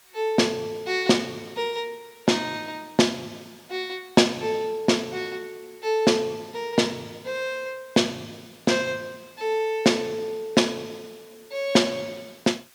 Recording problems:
hiss; slope +1 dB per octave, SNR 27 dB

